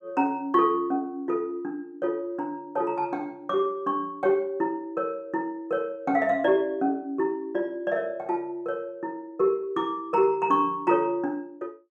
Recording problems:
none

